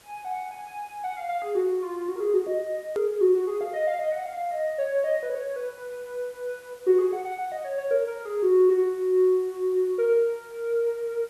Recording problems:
background hiss; slope -3 dB per octave, SNR 27 dB
edit click; at 3 s

